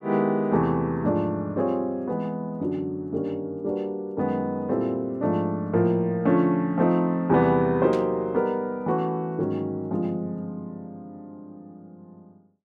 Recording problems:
burst of static; at 8 s; peak -11 dB vs average level

